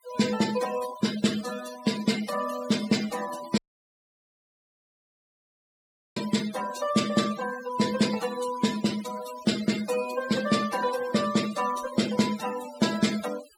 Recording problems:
noise reduction artefacts; signal-to-artefact ratio 10 dB
audio cutting out; at 3.5 s for 2.5 s

